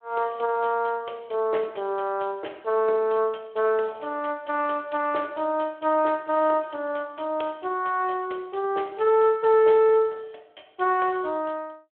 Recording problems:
telephone audio; 320 Hz to 3.4 kHz, Speex

